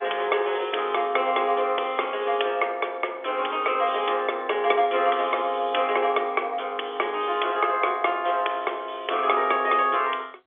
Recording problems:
phone line; 300 Hz to 3.5 kHz, G.711

